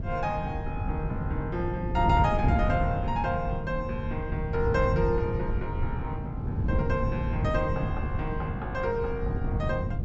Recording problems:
treble missing; nothing above 8 kHz
wind noise; below 150 Hz, SNR 0 dB

